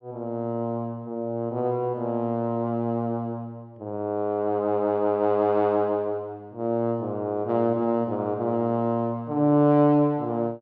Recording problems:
none

